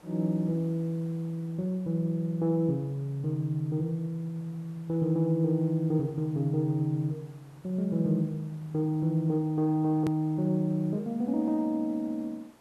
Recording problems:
background hiss; slope -6 dB per octave, SNR 28 dB
edit click; at 10 s

